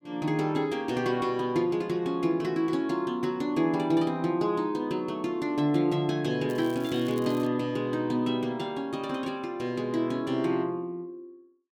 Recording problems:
crackle; at 6.5 s; loose cable, SNR 22 dB

